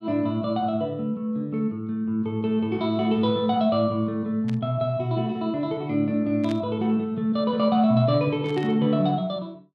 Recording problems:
static burst; at 4.5 s, at 6.5 s and at 8.5 s; peak -11 dB vs average level

